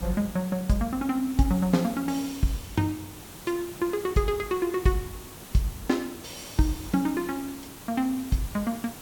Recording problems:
hiss; slope -4 dB per octave, SNR 14 dB

